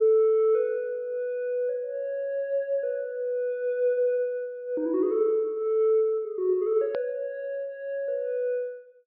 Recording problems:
treble cut off; nothing above 5.1 kHz
click at an edit; at 7 s

